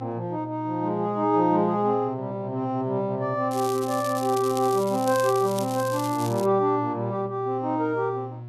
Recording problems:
hum; 60 Hz, harmonics up to 720 Hz, SNR 14 dB
crackle; from 3.5 to 6.5 s; loose cable, SNR 14 dB

